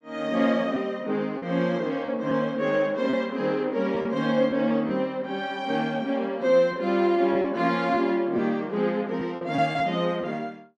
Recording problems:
packet loss; 4% of the sound replaced, filled with repeated pitch periods

